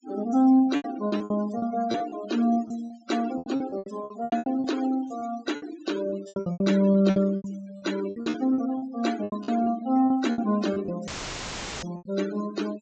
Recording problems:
treble cut off; nothing above 8 kHz
noise reduction artefacts; signal-to-artefact ratio 13 dB
lost packets; 17% of the sound replaced, filled with repeated pitch periods
audio cutting out; at 11 s for 1 s; filled with static

